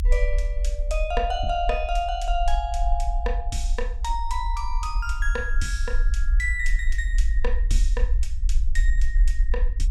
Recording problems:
rumble; below 50 Hz, SNR -3 dB

